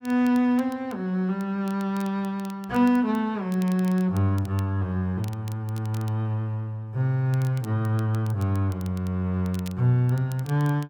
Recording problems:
crackling; vinyl, SNR 24 dB

